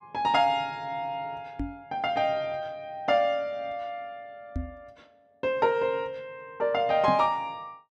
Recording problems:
microphone bump; at 1.5 s, at 4.5 s and at 7 s; peak 0 dB vs average level

